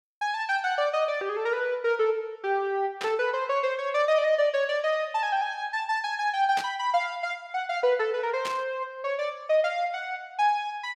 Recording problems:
burst of static; at 3 s, at 6.5 s and at 8.5 s; peak -3 dB vs average level

